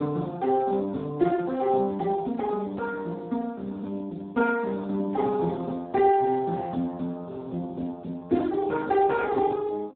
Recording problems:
telephone audio; 130 Hz to 2.1 kHz, Speex

